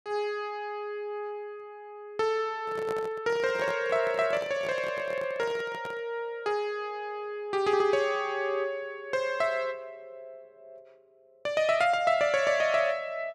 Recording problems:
handling noise; from 2.5 to 6 s; peak -5 dB vs average level

